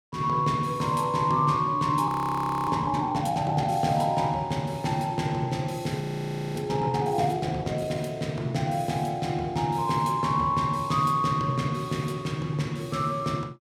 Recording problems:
audio freezing; at 2 s for 0.5 s and at 6 s for 0.5 s

